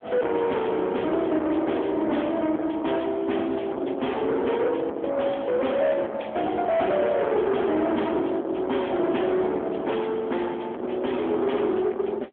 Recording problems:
phone line; 240 Hz to 3.5 kHz, AMR-NB
distortion; soft clipping, signal-to-distortion ratio 8 dB

